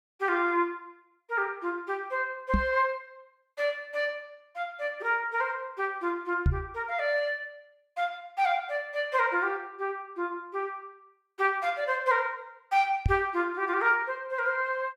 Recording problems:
knock on the microphone; at 2.5 s, at 6.5 s and at 13 s; peak +7 dB vs average level

